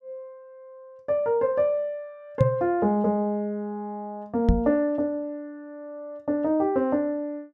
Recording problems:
knock on the microphone; at 2.5 s and at 4.5 s; peak +8 dB vs average level

